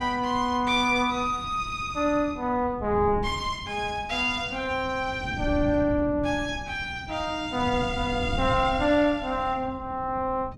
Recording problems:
wind on the microphone; below 190 Hz, SNR 12 dB

